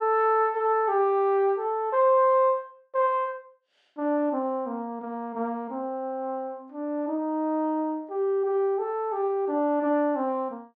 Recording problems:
none

